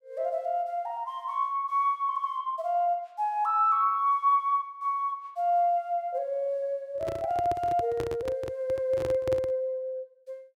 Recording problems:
microphone handling noise; from 7 to 9.5 s; peak -3 dB vs average level

